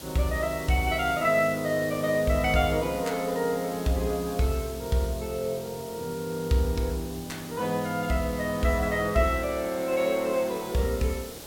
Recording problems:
background hiss; SNR 14 dB

